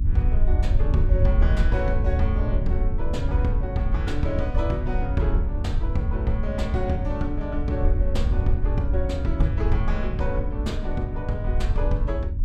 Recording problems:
electrical hum; 50 Hz, harmonics up to 300 Hz, SNR 11 dB
low-frequency rumble; below 74 Hz, SNR -3 dB

